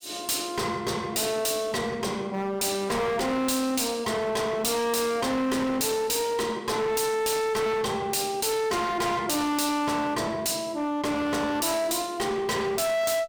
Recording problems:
distorted audio; hard clipping, uneven, signal-to-distortion ratio 6 dB

